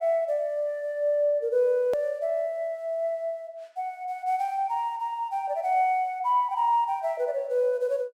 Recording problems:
edit click; at 2 s

